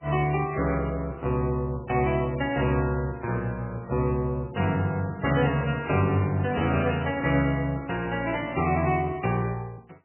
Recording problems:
codec artefacts; MP3, log-spectral distance 3 dB, nothing above 2.6 kHz

